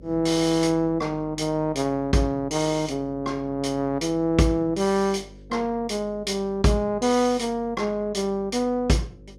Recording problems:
hum; 50 Hz, harmonics up to 550 Hz, SNR 22 dB

